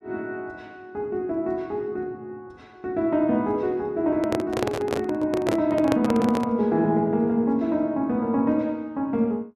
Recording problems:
handling noise; from 4 to 6.5 s; peak +3 dB vs average level

